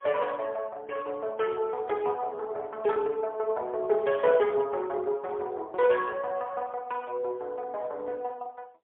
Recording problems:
telephone audio; 320 Hz to 3.3 kHz, AMR-NB, then MP3

